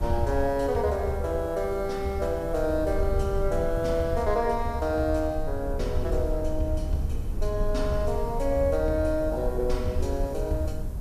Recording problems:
background hiss; SNR 27 dB
low-frequency rumble; below 70 Hz, SNR 6 dB

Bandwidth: 14.5 kHz